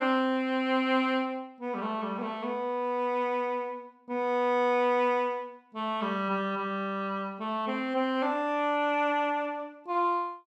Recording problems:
none

